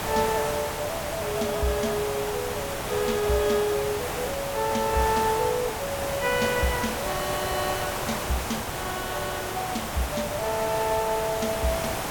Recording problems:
background hiss; SNR 2 dB

